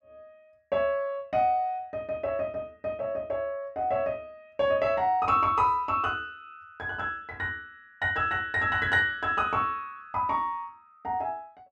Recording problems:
none

